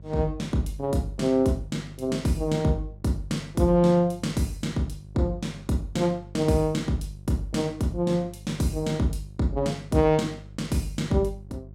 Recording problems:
electrical hum; 50 Hz, harmonics up to 400 Hz, SNR 19 dB

